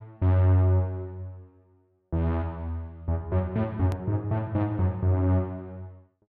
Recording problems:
edit click; at 4 s

